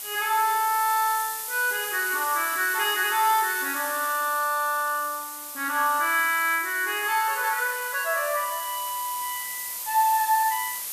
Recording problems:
background hiss; slope +2 dB per octave, SNR 7 dB

